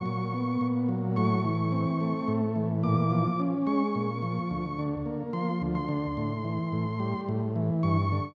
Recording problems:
none

